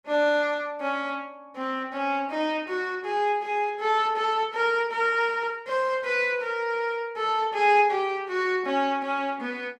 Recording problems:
none

